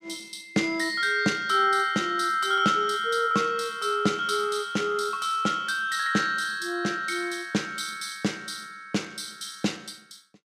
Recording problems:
none

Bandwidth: 15 kHz